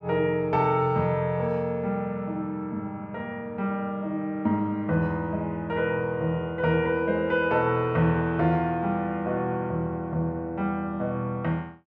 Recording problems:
none

